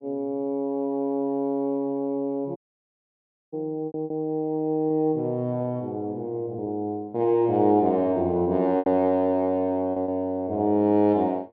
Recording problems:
lost packets; 4% of the sound replaced, filled with repeated pitch periods
dropout; at 2.5 s for 1 s

